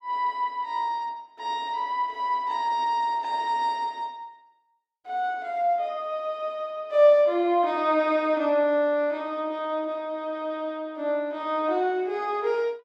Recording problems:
none

